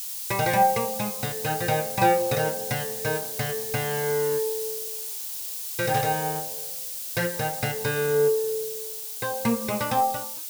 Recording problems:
background hiss; SNR 5 dB
static burst; at 6 s; peak -8 dB vs average level

